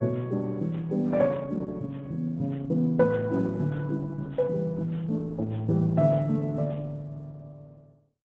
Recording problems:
lossy compression; AAC, then Opus, log-spectral distance 2 dB, nothing above 7.8 kHz

